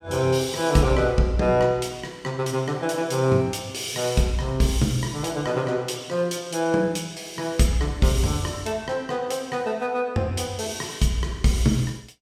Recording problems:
none

